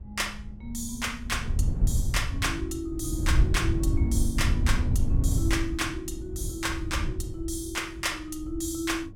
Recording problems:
wind on the microphone; below 96 Hz, SNR -2 dB

